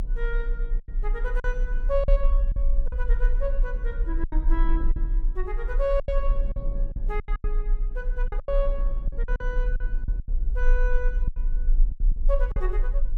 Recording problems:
low-frequency rumble; below 36 Hz, strongest tone 26 Hz, SNR -6 dB
wind on the microphone; below 260 Hz, SNR 13 dB
lost packets; 10% of the sound replaced, filled with silence

